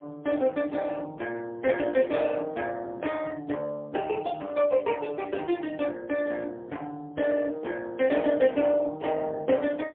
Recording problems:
phone line; 220 Hz to 2.8 kHz, AMR-NB, then MP3

